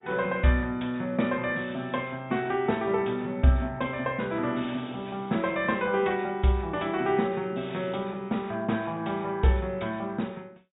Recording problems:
low-pass filter; nothing above 3.8 kHz
lossy codec; MP2, log-spectral distance 3 dB

